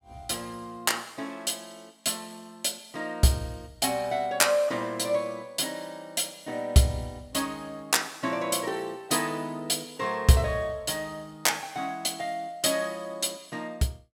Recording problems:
none

